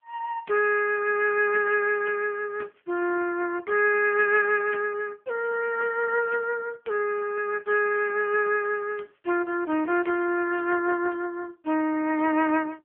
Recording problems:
phone line; 240 Hz to 3 kHz, AMR-NB

